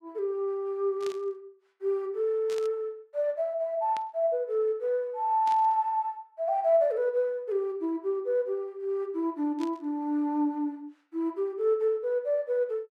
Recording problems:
burst of static; 5 times, first at 1 s; peak -10 dB vs average level

